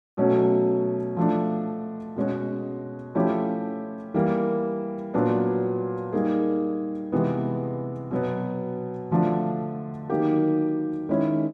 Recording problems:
none

